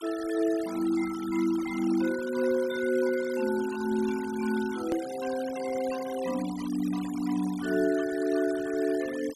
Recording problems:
denoising artefacts; signal-to-artefact ratio 15 dB
hard cut with a click; at 5 s

